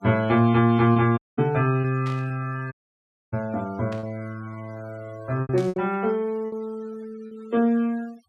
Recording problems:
noise reduction artefacts; signal-to-artefact ratio 26 dB
lost packets; 6% of the sound replaced, filled with repeated pitch periods
audio cutting out; at 1 s and at 2.5 s for 0.5 s
burst of static; at 2 s, at 4 s and at 5.5 s; peak -13 dB vs average level

